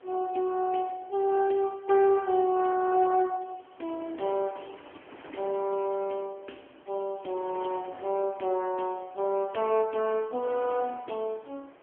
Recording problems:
phone line; 240 Hz to 2.1 kHz, AMR-NB
wind on the microphone; below 1.5 kHz, SNR 22 dB

